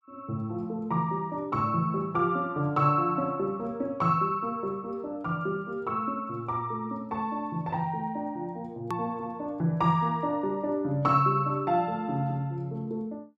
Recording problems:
edit click; at 9 s

